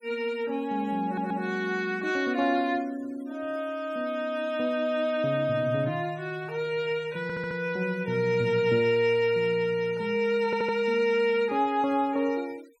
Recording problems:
noise reduction artefacts; signal-to-artefact ratio 26 dB
stutter; at 1 s, at 7 s and at 10 s

